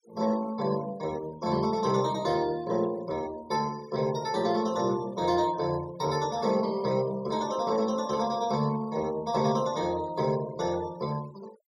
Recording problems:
denoising artefacts; signal-to-artefact ratio 20 dB

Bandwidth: 16 kHz